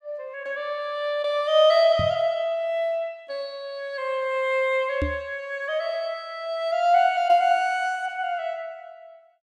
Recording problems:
knock on the microphone; at 2 s and at 5 s; peak 0 dB vs average level

